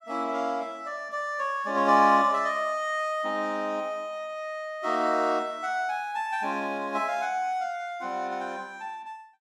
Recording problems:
none

